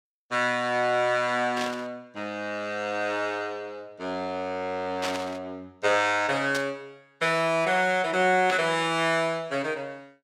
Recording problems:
burst of static; 4 times, first at 1.5 s; peak -1 dB vs average level

